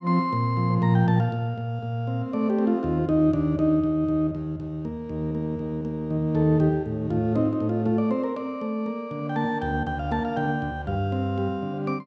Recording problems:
none

